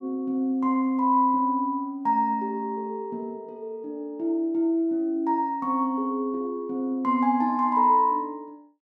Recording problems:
none

